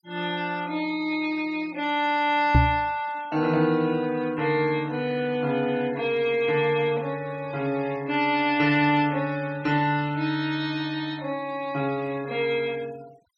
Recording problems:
noise reduction artefacts; signal-to-artefact ratio 23 dB
microphone bump; at 2.5 s; peak +9 dB vs average level

